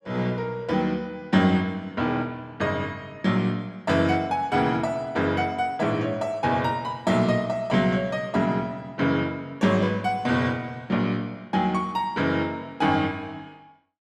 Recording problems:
none

